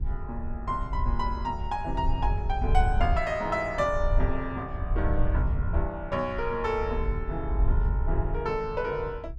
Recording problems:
wind noise; below 70 Hz, SNR 0 dB

